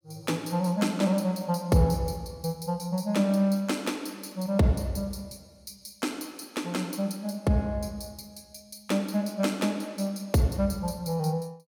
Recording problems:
none

